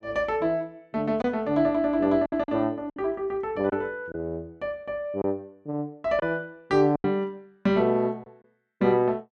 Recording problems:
packet loss; 5% of the sound replaced, filled with silence

